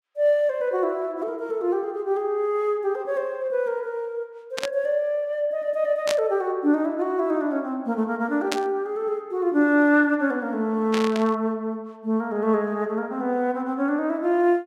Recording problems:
static burst; 4 times, first at 4.5 s; peak +1 dB vs average level

